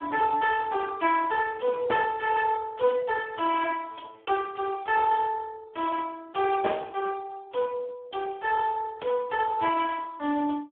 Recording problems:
phone line; 260 Hz to 2.6 kHz, Speex

